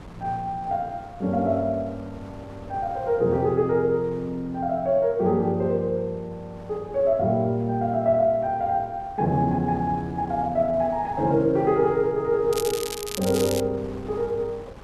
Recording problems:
wind on the microphone; below 710 Hz, SNR 21 dB
crackle; from 13 to 14 s; loose cable, SNR 9 dB

